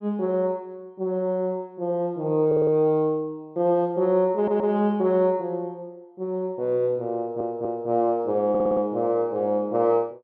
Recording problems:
audio stuttering; 4 times, first at 2.5 s

